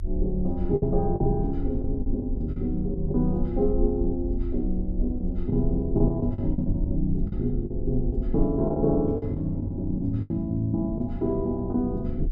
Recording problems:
rumble; below 52 Hz, SNR 6 dB
lost packets; 8% of the sound replaced, filled with the last packet

